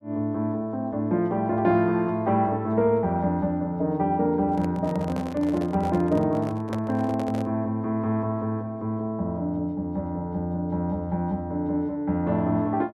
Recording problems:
handling noise; from 4.5 to 7.5 s; peak -4 dB vs average level

